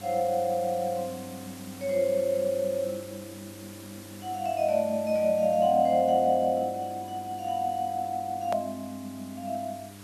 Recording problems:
mains hum; 50 Hz, harmonics up to 1 kHz, SNR 20 dB
hiss; slope -2 dB per octave, SNR 20 dB
click at an edit; at 8.5 s

